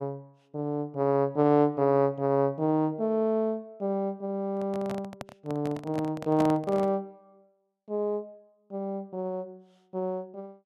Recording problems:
microphone handling noise; from 4.5 to 7 s; peak -2 dB vs average level

